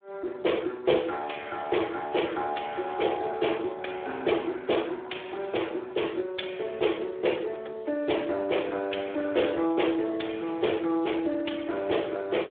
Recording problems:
telephone audio; 260 Hz to 3.6 kHz, Speex

